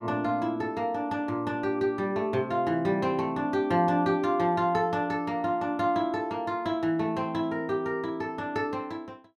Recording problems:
none

